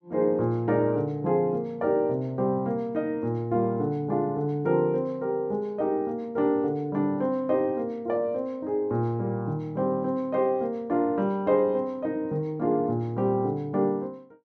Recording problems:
none

